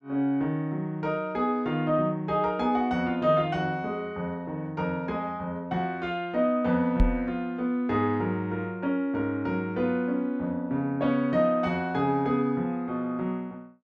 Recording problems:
microphone thump; at 7 s; peak +6 dB vs average level

